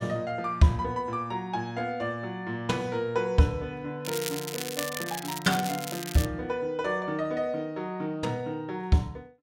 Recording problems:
crackle; from 4 to 6.5 s; loose cable, SNR 6 dB

